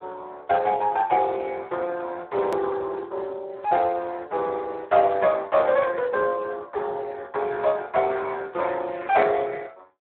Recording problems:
phone line; 320 Hz to 3.8 kHz, Speex
hard cut with a click; at 2.5 s

